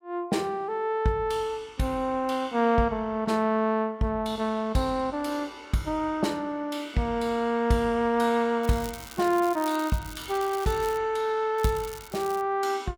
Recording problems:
crackling; from 8.5 to 11 s and at 12 s; loose cable, SNR 16 dB

